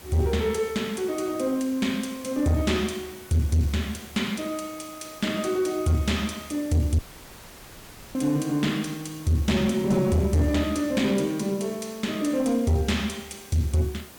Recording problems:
distorted audio; soft clipping, signal-to-distortion ratio 11 dB
background hiss; slope -3 dB per octave, SNR 19 dB
audio cutting out; at 7 s for 1 s

